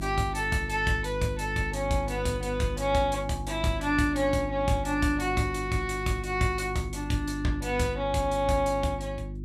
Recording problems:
hum; 50 Hz, harmonics up to 350 Hz, SNR 8 dB

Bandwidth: 14.5 kHz